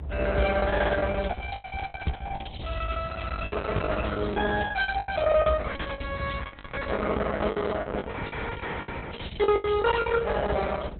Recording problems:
lossy codec; Opus, log-spectral distance 5 dB, nothing above 4 kHz
mains hum; 60 Hz, harmonics up to 720 Hz, SNR 26 dB
rumble; below 80 Hz, strongest tone 54 Hz, SNR 6 dB
packet loss; 15% of the sound replaced, filled with the last packet

